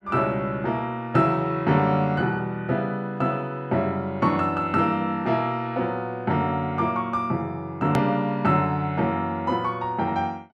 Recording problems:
hard cut with a click; at 8 s

